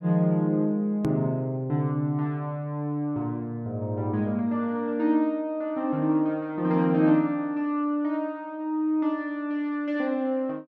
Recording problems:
click at an edit; at 1 s

